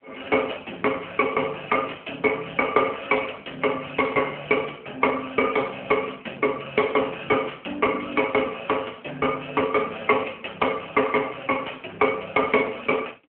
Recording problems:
telephone audio; 240 Hz to 3.2 kHz, AMR-NB

